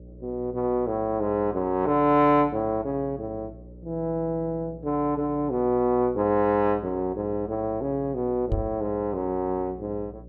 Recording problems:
hum; 60 Hz, harmonics up to 600 Hz, SNR 20 dB
microphone thump; at 8.5 s; peak 0 dB vs average level

